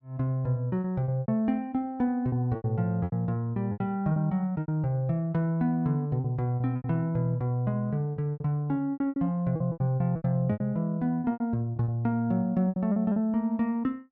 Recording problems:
packet loss; 13% of the sound replaced, filled with repeated pitch periods

